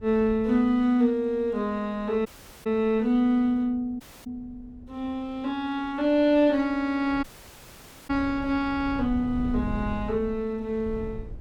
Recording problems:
wind on the microphone; below 130 Hz, SNR 15 dB
dropout; at 2.5 s, at 4 s and at 7 s for 1 s

